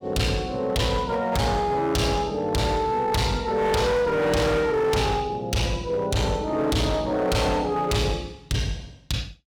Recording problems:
distortion; hard clipping, signal-to-distortion ratio 7 dB

